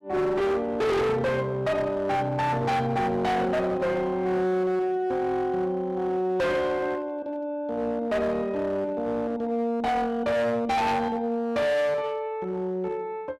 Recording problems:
distortion; hard clipping, uneven, signal-to-distortion ratio 7 dB

